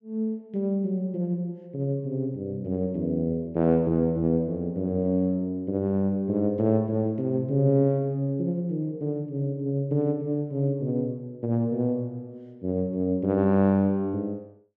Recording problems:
none

